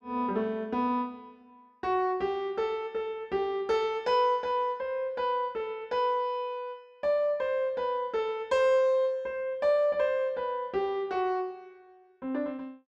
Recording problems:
none

